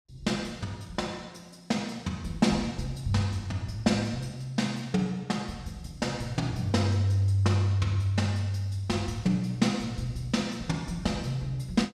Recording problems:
none

